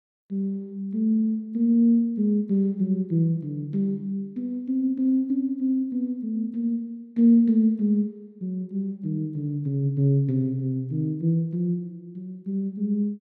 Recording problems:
none

